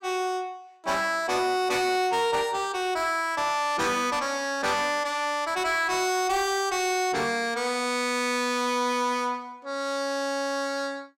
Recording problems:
distortion; soft clipping, signal-to-distortion ratio 11 dB

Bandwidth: 16 kHz